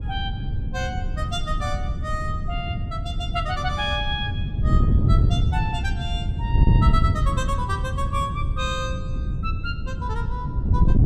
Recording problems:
wind on the microphone; below 130 Hz, SNR -5 dB

